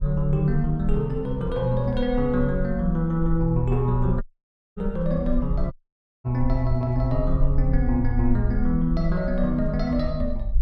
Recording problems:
low-frequency rumble; below 52 Hz, strongest tone 24 Hz, SNR 6 dB
dropout; at 4 s for 0.5 s and at 5.5 s for 0.5 s

